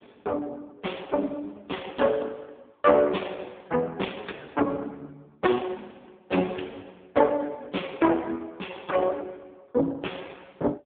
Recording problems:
telephone audio; 220 Hz to 3.5 kHz, AMR-NB

